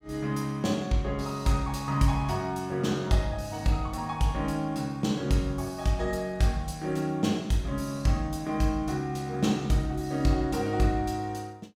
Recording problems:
none

